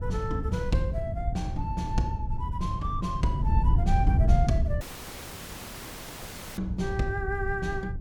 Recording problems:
wind noise; below 110 Hz, SNR -3 dB
audio cutting out; at 5 s for 2 s

